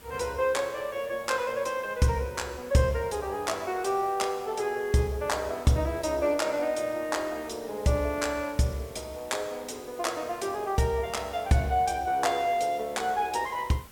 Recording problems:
hiss; slope -3 dB per octave, SNR 21 dB

